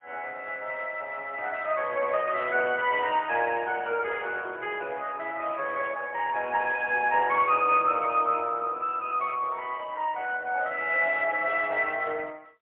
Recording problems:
phone line; 320 Hz to 3.3 kHz, AMR-NB, then MP3

